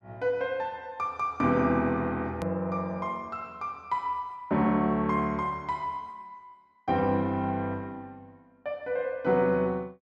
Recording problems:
click at an edit; at 2.5 s

